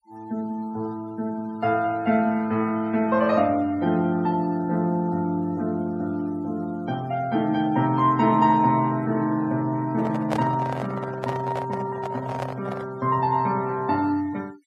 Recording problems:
noise reduction artefacts; signal-to-artefact ratio 25 dB
handling noise; from 10 to 13 s; peak +1 dB vs average level

